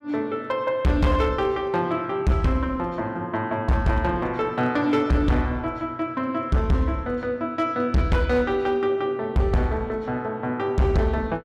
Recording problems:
distortion; hard clipping, signal-to-distortion ratio 8 dB

